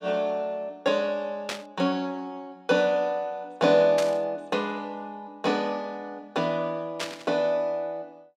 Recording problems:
burst of static; at 1.5 s, at 4 s and at 7 s; peak -1 dB vs average level

